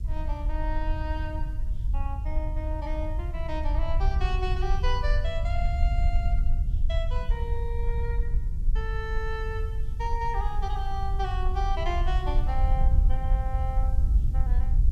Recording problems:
hiss; slope +3 dB per octave, SNR 29 dB
rumble; below 64 Hz, SNR -6 dB

